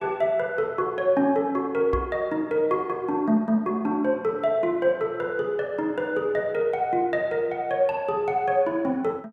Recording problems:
microphone thump; at 2 s; peak -3 dB vs average level

